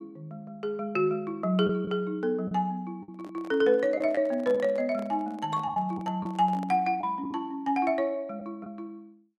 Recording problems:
lost packets; 4% of the sound replaced, filled with the last packet
handling noise; from 3 to 7 s; peak -10 dB vs average level

